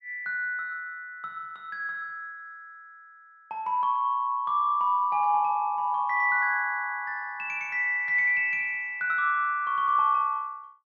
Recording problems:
none

